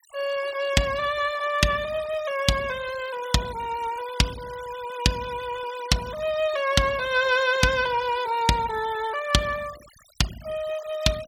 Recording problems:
denoising artefacts; signal-to-artefact ratio 18 dB

